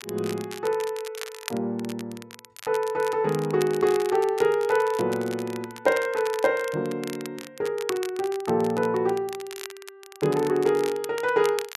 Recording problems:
crackle; vinyl, SNR 15 dB

